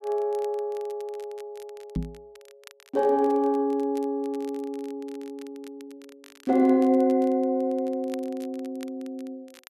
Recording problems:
crackle; vinyl, SNR 27 dB
microphone bump; at 2 s; peak 0 dB vs average level

